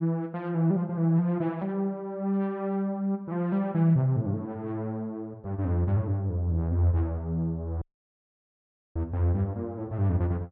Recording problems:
audio cutting out; at 8 s for 1 s

